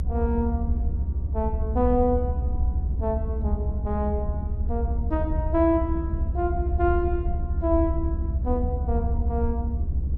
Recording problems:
low-frequency rumble; below 74 Hz, SNR -1 dB

